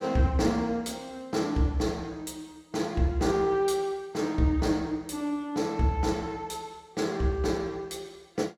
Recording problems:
none

